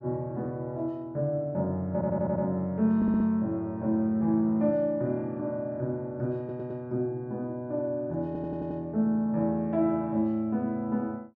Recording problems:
stutter; 4 times, first at 2 s

